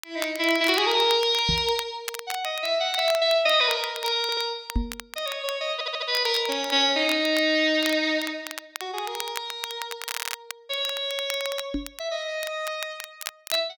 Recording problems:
crackle; vinyl, SNR 13 dB
microphone thump; at 1.5 s, at 5 s and at 12 s; peak +1 dB vs average level
audio stuttering; at 4 s, at 5.5 s and at 10 s

